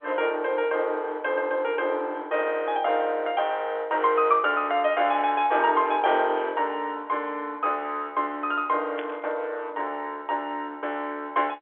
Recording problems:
phone line; 320 Hz to 3.6 kHz, G.711
static burst; at 9 s; peak -7 dB vs average level

